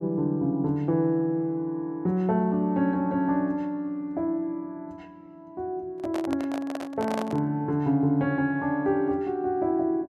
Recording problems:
microphone handling noise; from 6 to 7.5 s; peak -2 dB vs average level

